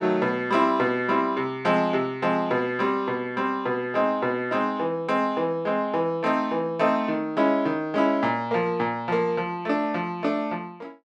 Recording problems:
none

